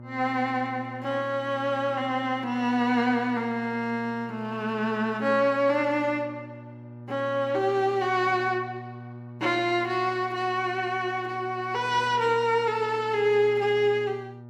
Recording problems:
hum; 60 Hz, harmonics up to 1.2 kHz, SNR 17 dB

